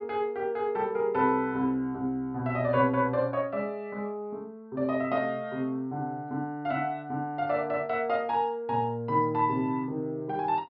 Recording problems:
treble cut off; nothing above 5.5 kHz

